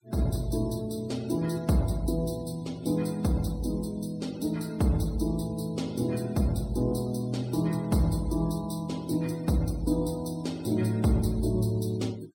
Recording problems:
noise reduction artefacts; signal-to-artefact ratio 22 dB

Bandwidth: 16.5 kHz